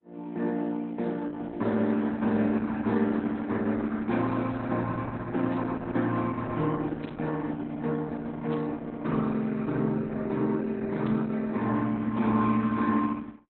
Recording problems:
lossy codec; Opus, log-spectral distance 3 dB, nothing above 4 kHz
static burst; 4 times, first at 5.5 s; peak -12 dB vs average level

